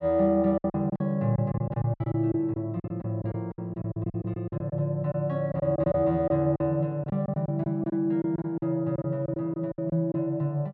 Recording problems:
lost packets; 14% of the sound replaced, filled with silence

